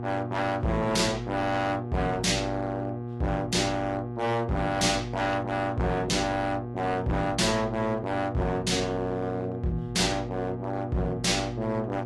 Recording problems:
lossy codec; AAC, log-spectral distance 2 dB, nothing above 11.3 kHz
distorted audio; hard clipping, signal-to-distortion ratio 8 dB
mains hum; 60 Hz, harmonics up to 1.2 kHz, SNR 8 dB

